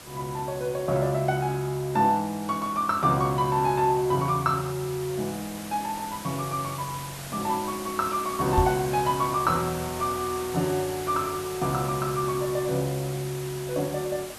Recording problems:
hiss; slope -2 dB per octave, SNR 12 dB
microphone bump; at 8.5 s; peak +5 dB vs average level

